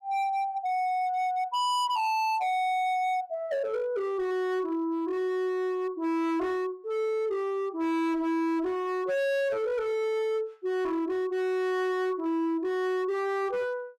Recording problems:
distorted audio; hard clipping, signal-to-distortion ratio 7 dB

